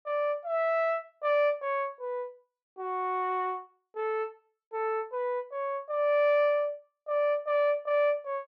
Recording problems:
none

